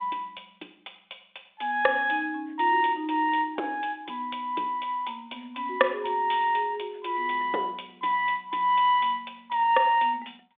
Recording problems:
phone line; 280 Hz to 3.6 kHz, G.726

